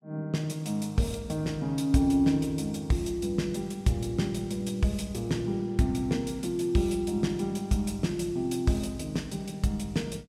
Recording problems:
none

